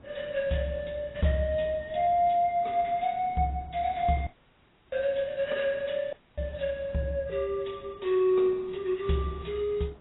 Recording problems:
lossy codec; AAC, log-spectral distance 4 dB, nothing above 3.8 kHz
background hiss; SNR 24 dB
dropout; at 4.5 s for 0.5 s and at 6 s

